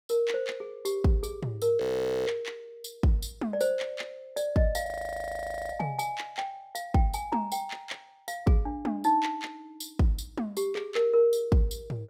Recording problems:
frozen audio; at 2 s and at 5 s for 1 s

